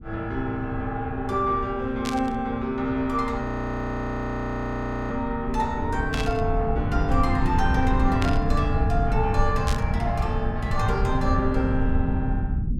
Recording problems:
low-frequency rumble; below 110 Hz, SNR 2 dB
burst of static; 4 times, first at 2 s; peak 0 dB vs average level
frozen audio; at 3.5 s for 1.5 s

